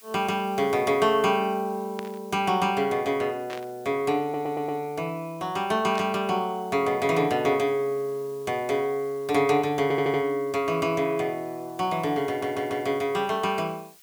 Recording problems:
hiss; slope +2 dB per octave, SNR 26 dB
burst of static; at 2 s, at 3.5 s and at 6 s; peak -8 dB vs average level
audio stuttering; at 4 s, at 10 s and at 12 s

